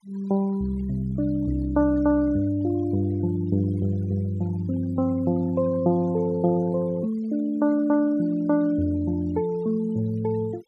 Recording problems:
denoising artefacts; signal-to-artefact ratio 25 dB

